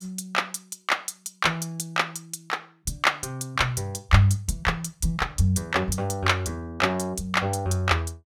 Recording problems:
none

